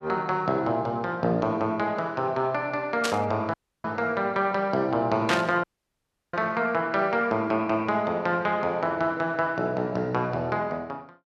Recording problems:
burst of static; at 3 s and at 5.5 s; peak +4 dB vs average level
audio cutting out; at 3.5 s and at 5.5 s for 0.5 s

